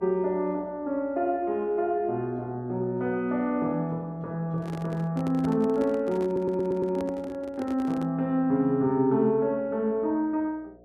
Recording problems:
electrical hum; 60 Hz, harmonics up to 720 Hz, SNR 28 dB
microphone handling noise; from 4.5 to 8 s; peak -7 dB vs average level
audio stuttering; at 6.5 s

